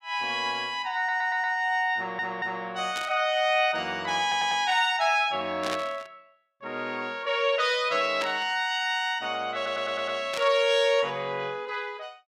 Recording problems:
stutter; 4 times, first at 1 s
burst of static; 4 times, first at 3 s; peak -3 dB vs average level

